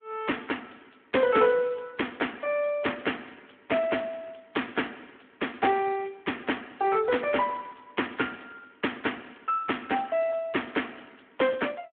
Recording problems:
phone line; 240 Hz to 3.3 kHz, Speex

